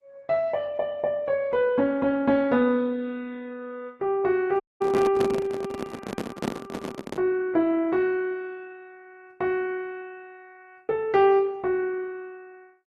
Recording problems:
codec artefacts; Opus, then Opus, log-spectral distance 2 dB
handling noise; from 4.5 to 7 s; peak 0 dB vs average level
audio cutting out; at 4.5 s

